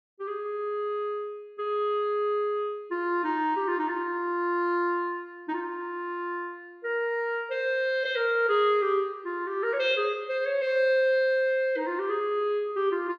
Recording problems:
none

